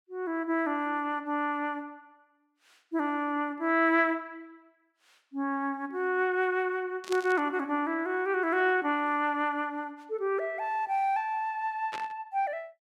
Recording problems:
static burst; at 7 s and at 12 s; peak -5 dB vs average level

